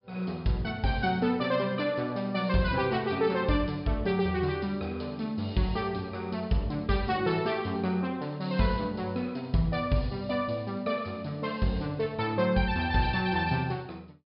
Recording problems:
treble missing; nothing above 5.5 kHz

